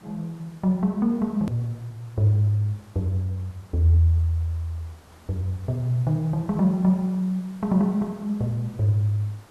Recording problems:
background hiss; slope -5 dB per octave, SNR 27 dB
hard cut with a click; at 1.5 s

